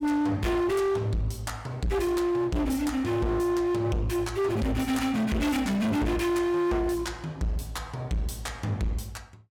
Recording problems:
distorted audio; hard clipping, uneven, signal-to-distortion ratio 7 dB

